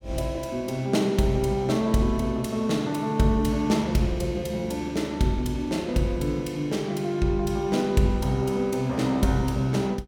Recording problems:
none

